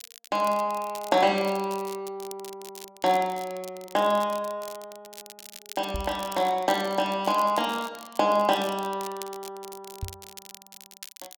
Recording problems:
crackle; vinyl, SNR 17 dB
microphone thump; at 6 s and at 10 s; peak -3 dB vs average level

